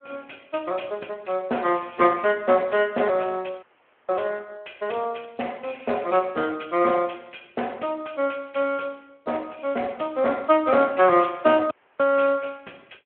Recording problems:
phone line; 300 Hz to 3.2 kHz, Speex
dropout; at 3.5 s and at 12 s

